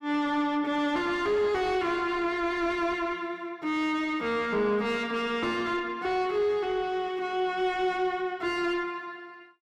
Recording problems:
distorted audio; soft clipping, signal-to-distortion ratio 10 dB

